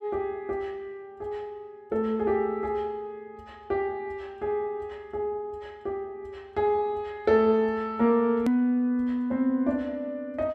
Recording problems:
edit click; at 8.5 s

